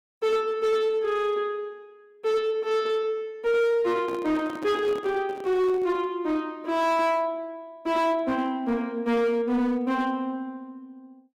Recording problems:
distorted audio; hard clipping, uneven, signal-to-distortion ratio 12 dB
handling noise; from 4 to 6 s; peak -8 dB vs average level

